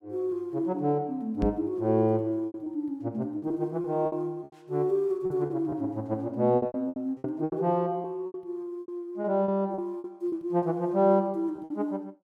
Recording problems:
lost packets; 11% of the sound replaced, filled with repeated pitch periods
microphone bump; at 1.5 s; peak +4 dB vs average level

